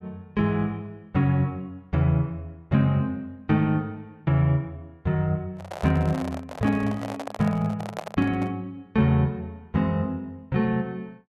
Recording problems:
microphone handling noise; from 5.5 to 8.5 s; peak -3 dB vs average level

